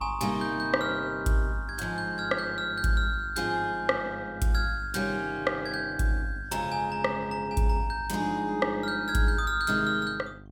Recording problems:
hum; 50 Hz, harmonics up to 800 Hz, SNR 20 dB

